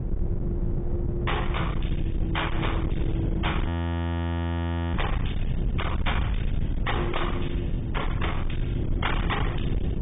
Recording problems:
treble missing; nothing above 3.7 kHz
lossy codec; AAC, log-spectral distance 3 dB
distortion; hard clipping, signal-to-distortion ratio 8 dB
rumble; below 170 Hz, SNR -3 dB
audio freezing; at 3.5 s for 1.5 s

